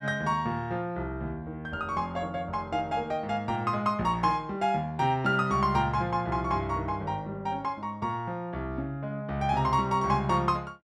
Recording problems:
none

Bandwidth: 12 kHz